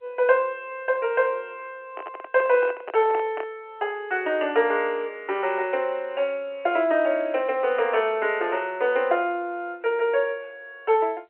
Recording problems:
phone line; 340 Hz to 3.1 kHz, G.711
microphone handling noise; from 2 to 3.5 s; peak -6 dB vs average level

